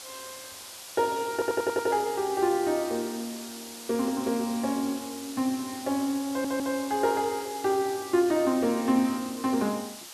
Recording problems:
background hiss; slope +1 dB per octave, SNR 13 dB
audio stuttering; at 1.5 s and at 6.5 s

